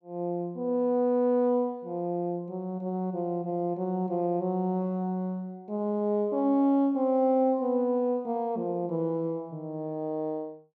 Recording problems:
none

